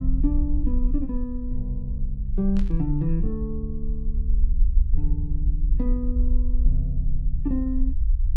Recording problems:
rumble; below 50 Hz, SNR -3 dB
burst of static; at 2.5 s; peak -11 dB vs average level

